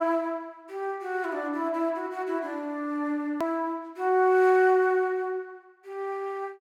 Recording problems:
hard cut with a click; at 3.5 s

